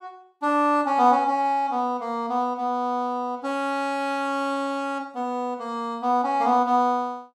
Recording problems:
none

